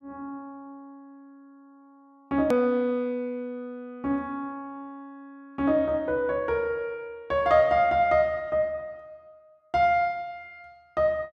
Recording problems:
edit click; at 2.5 s

